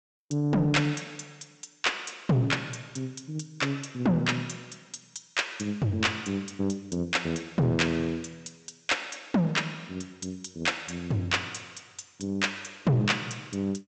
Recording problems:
low-pass filter; nothing above 8 kHz
distortion; soft clipping, signal-to-distortion ratio 12 dB

